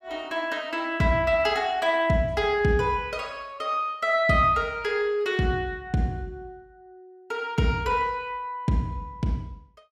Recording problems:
none

